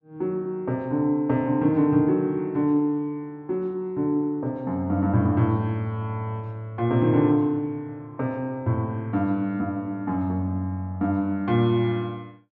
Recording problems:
none

